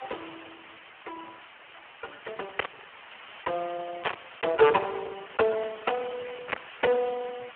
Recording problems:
phone line; 370 Hz to 3.4 kHz, Speex
hiss; SNR 17 dB
static burst; at 2.5 s, at 4 s and at 6.5 s; peak +7 dB vs average level

